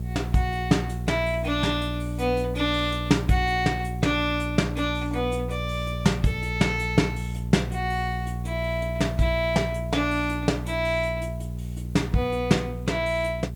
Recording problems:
electrical hum; 60 Hz, harmonics up to 420 Hz, SNR 6 dB
hiss; slope -1 dB per octave, SNR 29 dB

